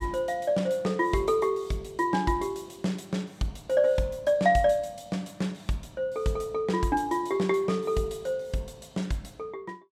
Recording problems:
none

